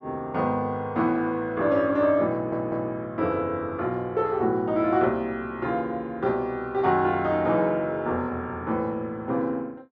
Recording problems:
audio stuttering; at 2.5 s

